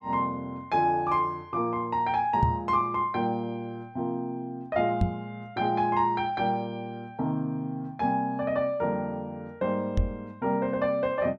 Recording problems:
microphone thump; at 2.5 s, at 5 s and at 10 s; peak +6 dB vs average level

